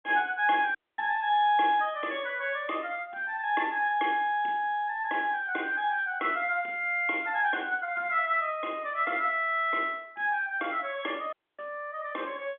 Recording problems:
telephone audio; 280 Hz to 3.5 kHz, G.711
audio cutting out; at 1 s and at 11 s

